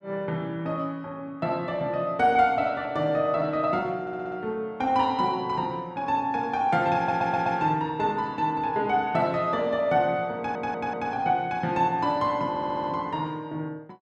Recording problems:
audio stuttering; 4 times, first at 4 s

